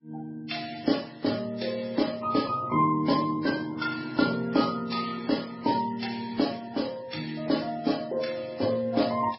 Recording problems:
lossy codec; Vorbis, then MP3, log-spectral distance 5 dB, nothing above 5.5 kHz

